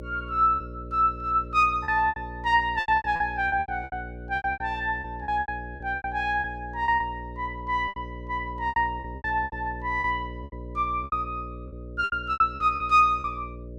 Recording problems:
electrical hum; 60 Hz, harmonics up to 600 Hz, SNR 14 dB
packet loss; 15% of the sound replaced, filled with repeated pitch periods

